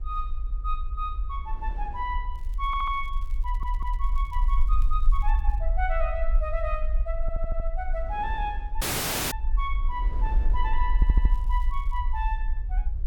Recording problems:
low-frequency rumble; below 46 Hz, SNR -4 dB
wind on the microphone; below 400 Hz, SNR 18 dB
crackling; from 2.5 to 5.5 s and from 11 to 12 s; loose cable, SNR 28 dB
audio stuttering; 4 times, first at 2.5 s
dropout; at 9 s for 0.5 s

